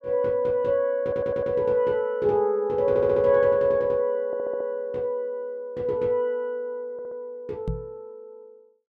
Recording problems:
audio stuttering; 4 times, first at 1 s
microphone thump; at 7.5 s; peak -2 dB vs average level

